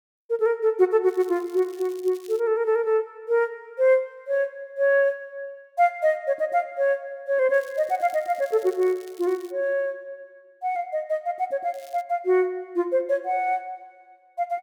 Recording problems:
crackling; from 1 to 2.5 s, from 7.5 to 9.5 s and at 12 s; loose cable, SNR 26 dB

